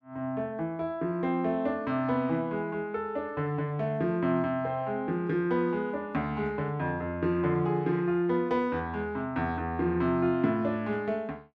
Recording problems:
none

